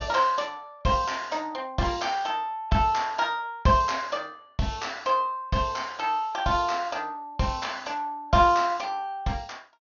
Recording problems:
treble missing; nothing above 6.6 kHz

